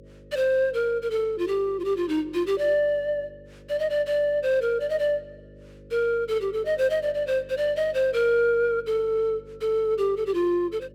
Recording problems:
hum; 50 Hz, harmonics up to 550 Hz, SNR 24 dB

